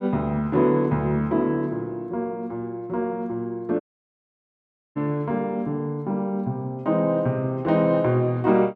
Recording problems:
audio cutting out; at 4 s for 1 s

